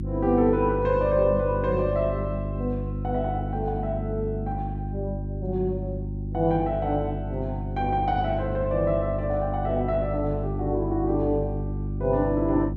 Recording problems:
electrical hum; 50 Hz, harmonics up to 350 Hz, SNR 4 dB

